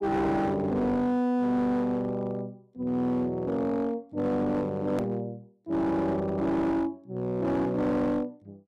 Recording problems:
distortion; hard clipping, uneven, signal-to-distortion ratio 10 dB
click at an edit; at 5 s

